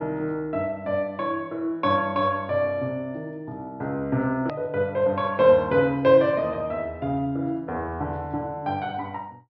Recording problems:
low-pass filter; nothing above 5.5 kHz
click at an edit; at 4.5 s

